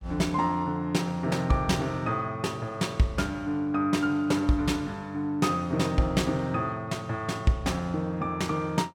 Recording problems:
none

